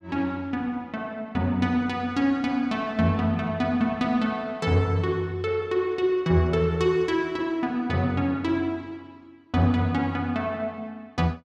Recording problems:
none

